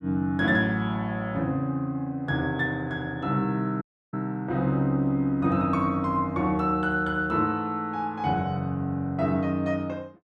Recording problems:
audio cutting out; at 4 s

